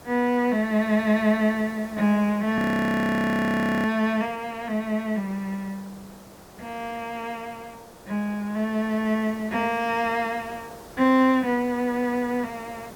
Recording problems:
hiss; SNR 21 dB
audio freezing; at 2.5 s for 1.5 s

